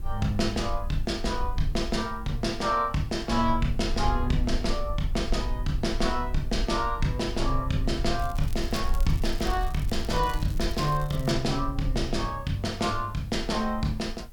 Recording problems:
background hiss; slope -1 dB per octave, SNR 30 dB
rumble; below 52 Hz, strongest tone 22 Hz, SNR 6 dB
crackling; from 8 to 11 s; loose cable, SNR 18 dB

